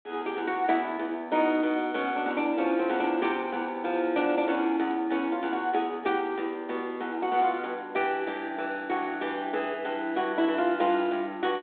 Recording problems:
phone line; 260 Hz to 3.6 kHz, G.726

